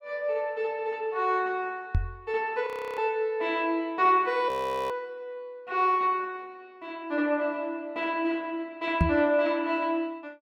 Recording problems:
microphone thump; at 2 s and at 9 s; peak +7 dB vs average level
frozen audio; at 2.5 s and at 4.5 s

